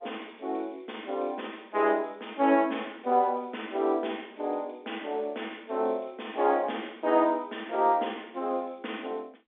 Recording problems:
telephone audio; 240 Hz to 3.6 kHz, G.711

